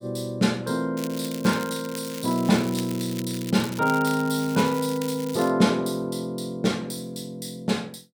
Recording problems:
crackle; from 1 to 5.5 s; loose cable, SNR 14 dB

